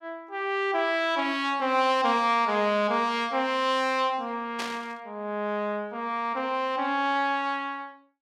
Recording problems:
static burst; at 4.5 s; peak -3 dB vs average level

